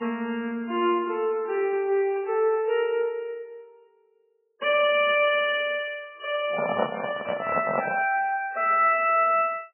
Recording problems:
lossy codec; MP3, log-spectral distance 3 dB, nothing above 2.4 kHz
handling noise; from 6.5 to 8 s; peak +3 dB vs average level

